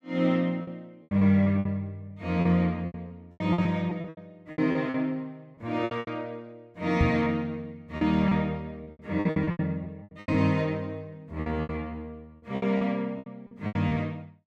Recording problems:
lost packets; 14% of the sound replaced, filled with repeated pitch periods
knock on the microphone; at 7 s; peak +7 dB vs average level

